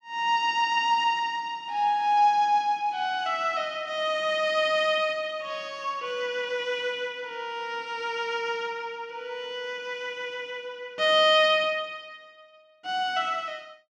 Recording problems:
none

